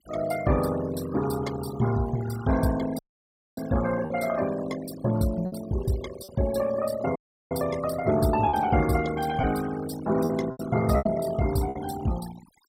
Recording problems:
denoising artefacts; signal-to-artefact ratio 15 dB
lost packets; 4% of the sound replaced, filled with repeated pitch periods
audio cutting out; at 3 s for 0.5 s and at 7 s

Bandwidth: 16 kHz